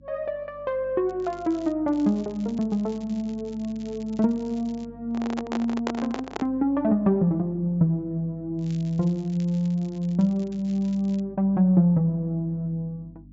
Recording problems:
treble cut off; nothing above 8 kHz
electrical hum; 50 Hz, harmonics up to 300 Hz, SNR 24 dB
crackling; at 1 s, from 2 to 5 s and from 8.5 to 11 s; loose cable, SNR 27 dB
handling noise; from 5 to 6.5 s; peak 0 dB vs average level

